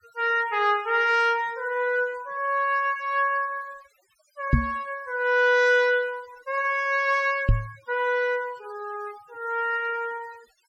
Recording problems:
noise reduction artefacts; signal-to-artefact ratio 23 dB
knock on the microphone; at 4.5 s and at 7.5 s; peak +8 dB vs average level

